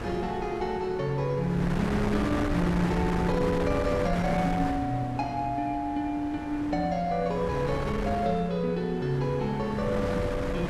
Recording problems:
wind on the microphone; below 770 Hz, SNR 6 dB

